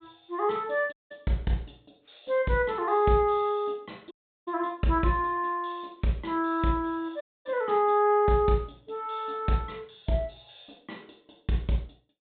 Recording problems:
low-pass filter; nothing above 4 kHz
audio cutting out; at 1 s, at 4 s and at 7 s

